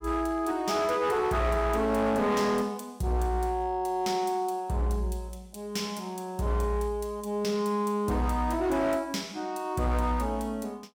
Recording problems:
distortion; hard clipping, signal-to-distortion ratio 11 dB

